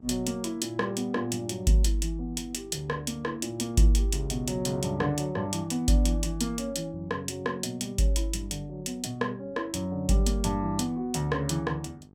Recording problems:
hum; 50 Hz, harmonics up to 900 Hz, SNR 26 dB

